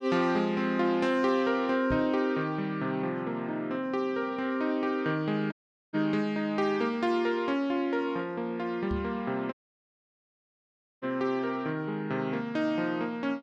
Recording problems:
knock on the microphone; at 2 s and at 9 s; peak -2 dB vs average level
dropout; at 5.5 s and at 9.5 s for 1.5 s

